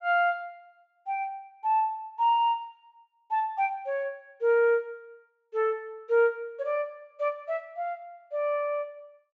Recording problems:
treble cut off; nothing above 8 kHz

